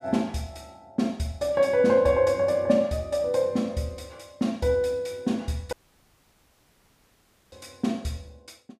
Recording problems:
dropout; at 5.5 s for 2 s

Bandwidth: 15 kHz